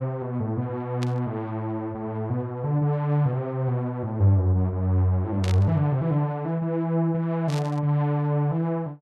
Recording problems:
static burst; at 1 s, at 5.5 s and at 7.5 s; peak -6 dB vs average level

